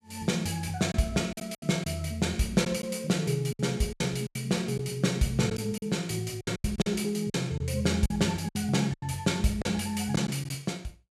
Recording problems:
lost packets; 9% of the sound replaced, filled with silence

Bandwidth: 14.5 kHz